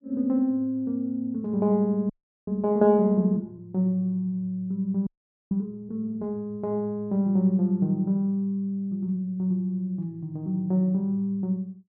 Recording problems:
audio freezing; at 2 s and at 5 s

